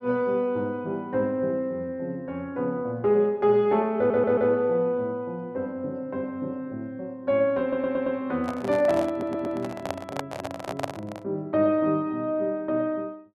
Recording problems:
audio stuttering; at 4 s, at 7.5 s and at 9 s
handling noise; from 8.5 to 11 s; peak +1 dB vs average level

